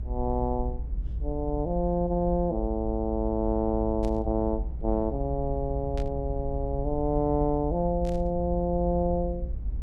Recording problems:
rumble; below 60 Hz, SNR 6 dB
burst of static; at 4 s, at 6 s and at 8 s; peak -13 dB vs average level

